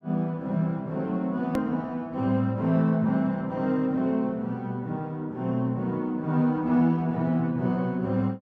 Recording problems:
hard cut with a click; at 1.5 s

